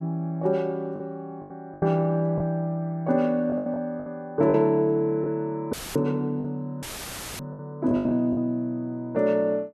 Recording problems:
lost packets; 8% of the sound replaced, filled with the last packet
audio cutting out; at 5.5 s and at 7 s for 0.5 s; filled with static

